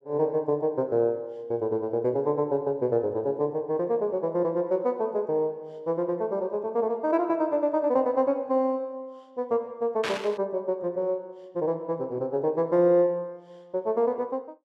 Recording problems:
static burst; at 10 s; peak -1 dB vs average level

